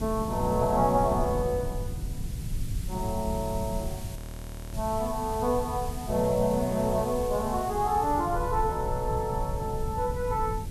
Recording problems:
hiss; slope 0 dB per octave, SNR 17 dB
low-frequency rumble; below 120 Hz, SNR 9 dB
wind noise; below 220 Hz, SNR 14 dB
frozen audio; at 4 s for 0.5 s

